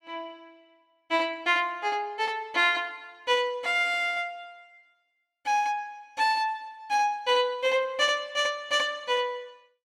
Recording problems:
none

